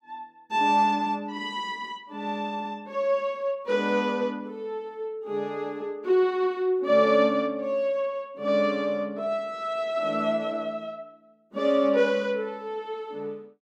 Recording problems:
none

